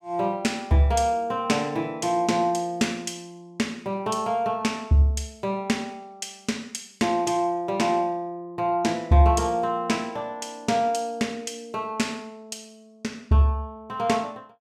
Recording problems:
none

